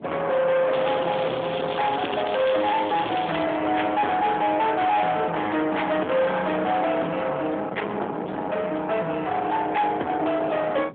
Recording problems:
telephone audio; 240 Hz to 3.7 kHz, AMR-NB
distortion; soft clipping, signal-to-distortion ratio 7 dB
wind on the microphone; below 1.2 kHz, SNR 12 dB
crackle; from 0.5 to 3.5 s; loose cable, SNR 12 dB

